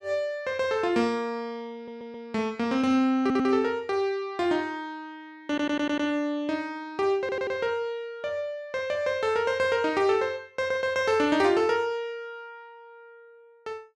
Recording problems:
stutter; 4 times, first at 2 s

